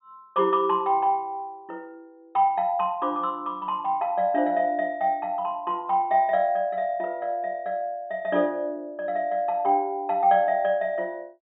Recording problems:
treble missing; nothing above 4 kHz

